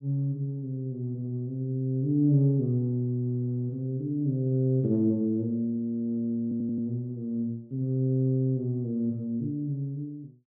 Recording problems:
audio stuttering; at 6.5 s

